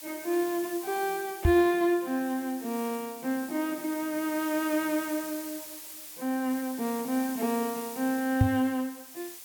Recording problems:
background hiss; slope +1 dB per octave, SNR 12 dB
microphone thump; at 1.5 s and at 8.5 s; peak +10 dB vs average level

